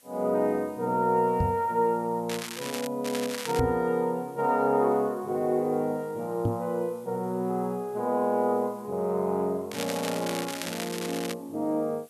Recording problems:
hiss; slope 0 dB per octave, SNR 28 dB
microphone thump; at 1.5 s, at 3.5 s and at 6.5 s; peak +4 dB vs average level
crackle; at 2.5 s, at 3 s and from 9.5 to 11 s; loose cable, SNR 8 dB

